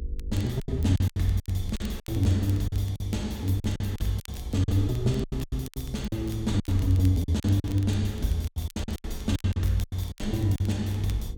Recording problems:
hum; 50 Hz, harmonics up to 500 Hz, SNR 19 dB
rumble; below 68 Hz, SNR 11 dB
crackling; vinyl, SNR 23 dB
lost packets; 16% of the sound replaced, filled with silence

